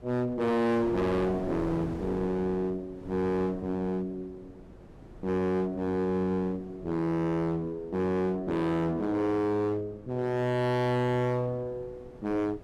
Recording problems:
distortion; hard clipping, uneven, signal-to-distortion ratio 5 dB
wind noise; below 440 Hz, SNR 17 dB

